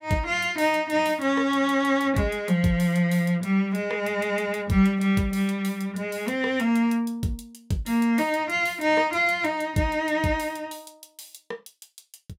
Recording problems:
none

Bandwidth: 16 kHz